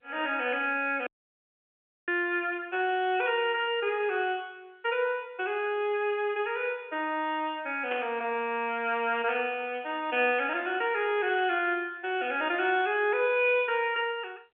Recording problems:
phone line; 260 Hz to 3.3 kHz, G.711
audio cutting out; at 1 s for 1 s
burst of static; at 8 s; peak -4 dB vs average level

